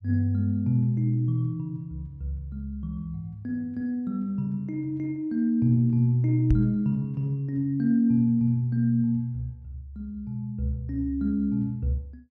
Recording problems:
knock on the microphone; at 6.5 s; peak +6 dB vs average level

